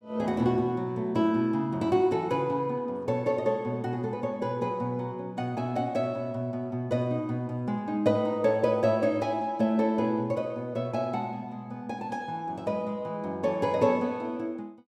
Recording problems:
none

